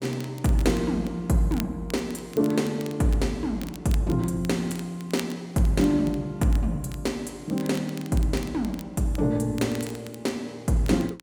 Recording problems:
crackle; vinyl, SNR 19 dB

